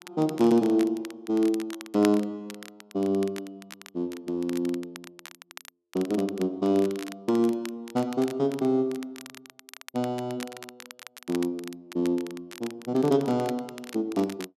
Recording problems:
crackling; vinyl, SNR 18 dB

